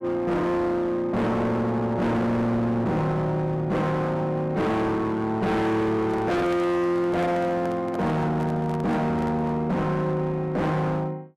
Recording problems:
distorted audio; hard clipping, uneven, signal-to-distortion ratio 6 dB
handling noise; from 6 to 9.5 s; peak -7 dB vs average level

